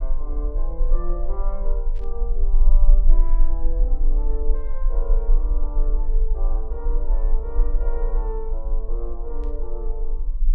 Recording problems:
rumble; below 34 Hz, strongest tone 22 Hz, SNR -12 dB
burst of static; at 2 s and at 9.5 s; peak -14 dB vs average level

